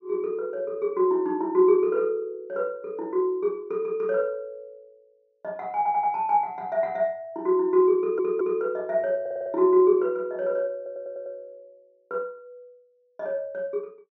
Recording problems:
low-pass filter; nothing above 6.4 kHz
audio stuttering; 4 times, first at 6 s

